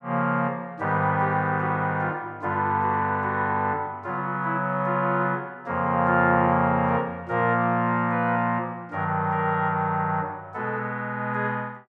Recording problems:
none

